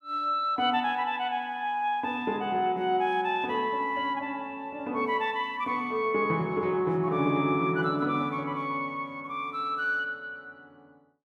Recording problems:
none

